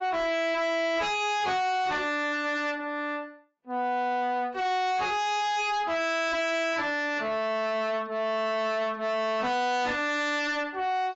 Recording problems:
codec artefacts; AAC, log-spectral distance 2 dB, nothing above 7.3 kHz
distortion; soft clipping, signal-to-distortion ratio 6 dB

